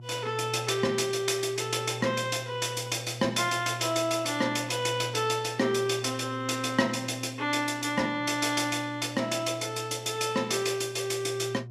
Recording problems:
electrical hum; 60 Hz, harmonics up to 480 Hz, SNR 14 dB

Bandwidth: 15 kHz